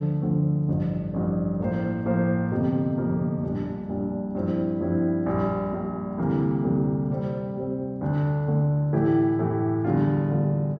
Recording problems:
none

